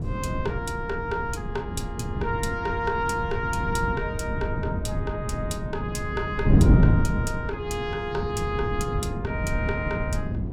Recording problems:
wind on the microphone; below 190 Hz, SNR -2 dB

